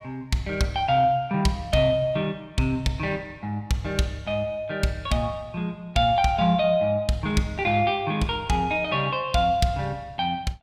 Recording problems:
none

